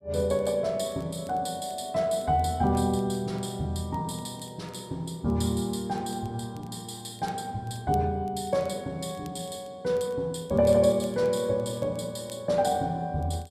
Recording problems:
crackle; vinyl, SNR 29 dB

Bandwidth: 14.5 kHz